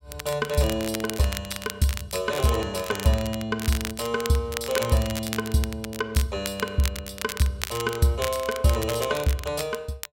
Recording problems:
crackling; vinyl, SNR 9 dB

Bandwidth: 16 kHz